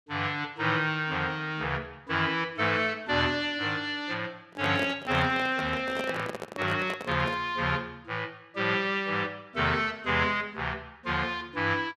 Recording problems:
handling noise; from 4.5 to 7.5 s; peak -3 dB vs average level

